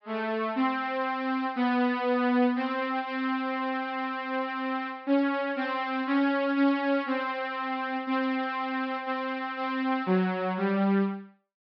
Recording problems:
treble cut off; nothing above 5.5 kHz

